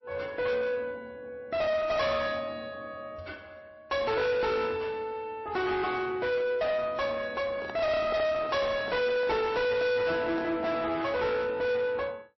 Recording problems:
lossy codec; MP3, log-spectral distance 2 dB, nothing above 5.7 kHz
distorted audio; soft clipping, signal-to-distortion ratio 7 dB
handling noise; from 7.5 to 11 s; peak -1 dB vs average level

